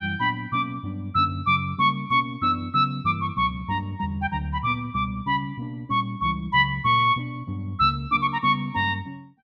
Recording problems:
none

